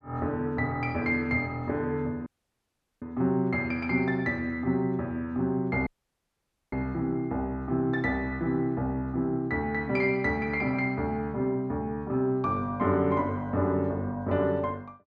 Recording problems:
audio cutting out; at 2.5 s for 1 s and at 6 s for 1 s

